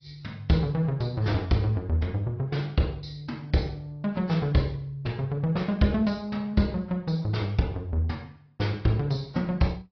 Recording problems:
treble missing; nothing above 5.3 kHz
codec artefacts; AAC, log-spectral distance 2 dB

